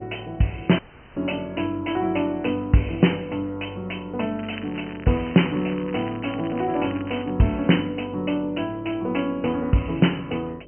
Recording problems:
low-pass filter; nothing above 3.1 kHz
hum; 50 Hz, harmonics up to 600 Hz, SNR 21 dB
dropout; at 1 s
crackling; from 4.5 to 7.5 s; loose cable, SNR 18 dB

